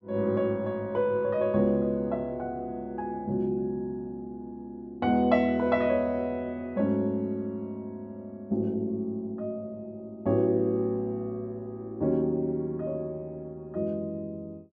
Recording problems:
none

